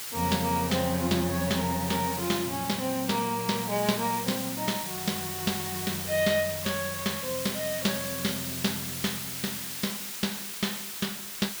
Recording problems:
background hiss; slope +2 dB per octave, SNR 4 dB

